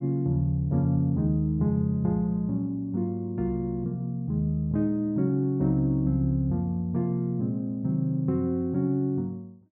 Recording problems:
none

